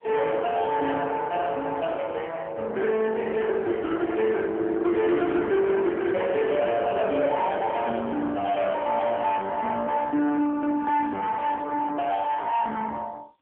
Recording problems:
telephone audio; 260 Hz to 3.3 kHz, AMR-NB
distortion; soft clipping, signal-to-distortion ratio 7 dB

